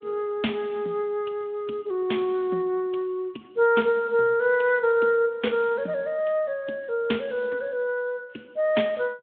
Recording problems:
phone line; 240 Hz to 3.5 kHz, Speex

